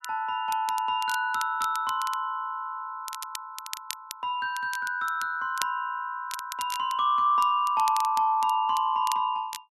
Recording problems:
crackling; vinyl, SNR 14 dB

